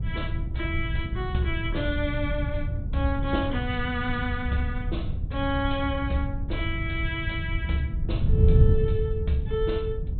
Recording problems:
treble cut off; nothing above 4 kHz
wind on the microphone; below 110 Hz, SNR -1 dB

